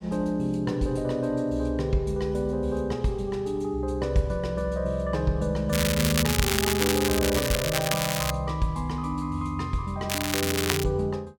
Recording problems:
crackle; from 5.5 to 8.5 s and at 10 s; loose cable, SNR 1 dB

